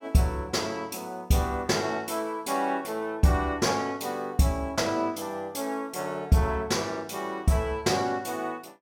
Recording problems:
none

